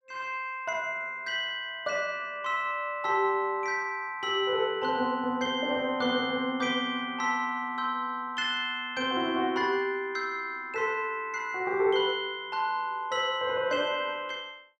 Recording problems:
none

